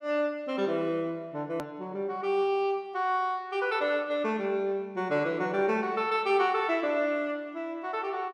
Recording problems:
edit click; at 1.5 s

